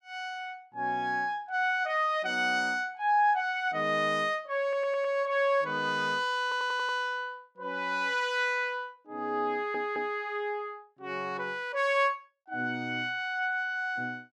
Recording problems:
stutter; at 4.5 s, at 6.5 s and at 9.5 s

